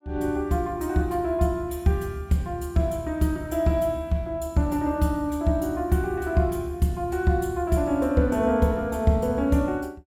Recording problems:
none

